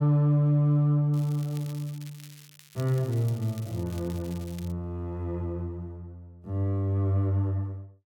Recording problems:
crackling; from 1 to 4.5 s; loose cable, SNR 22 dB

